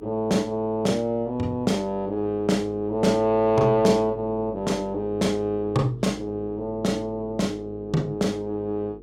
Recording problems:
hum; 50 Hz, harmonics up to 450 Hz, SNR 19 dB

